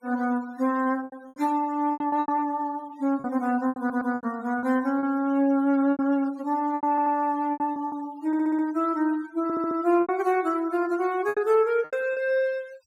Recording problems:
noise reduction artefacts; signal-to-artefact ratio 24 dB
lost packets; 11% of the sound replaced, filled with repeated pitch periods
stutter; 4 times, first at 4 s

